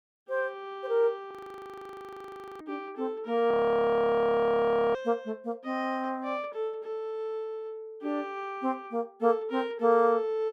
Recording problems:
audio freezing; at 1.5 s for 1.5 s and at 3.5 s for 1.5 s

